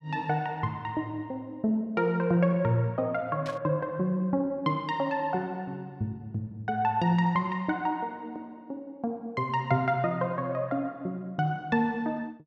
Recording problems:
static burst; at 3.5 s; peak -9 dB vs average level

